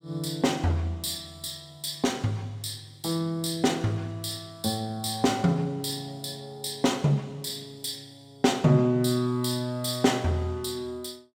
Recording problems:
none

